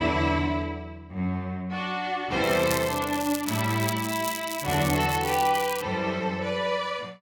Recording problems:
crackle; from 2.5 to 6 s; loose cable, SNR 9 dB

